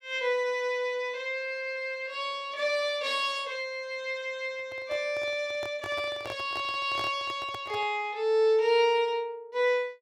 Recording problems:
handling noise; from 4.5 to 8 s; peak -6 dB vs average level

